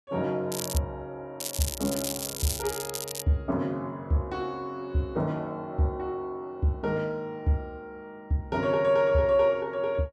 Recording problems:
crackle; at 0.5 s and from 1.5 to 3 s; loose cable, SNR 5 dB

